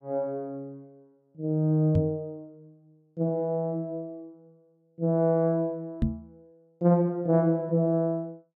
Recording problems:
knock on the microphone; at 2 s and at 6 s; peak +4 dB vs average level

